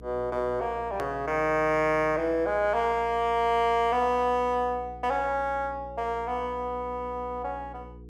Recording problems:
hum; 60 Hz, harmonics up to 480 Hz, SNR 19 dB
edit click; at 1 s

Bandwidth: 14 kHz